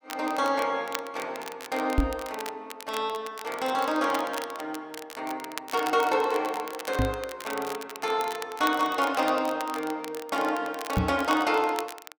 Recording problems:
crackle; vinyl, SNR 13 dB
knock on the microphone; at 2 s, at 7 s and at 11 s; peak +8 dB vs average level

